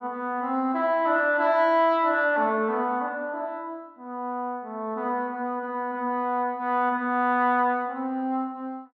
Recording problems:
none

